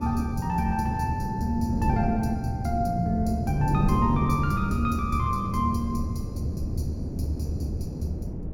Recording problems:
wind noise; below 230 Hz, SNR 4 dB

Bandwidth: 17 kHz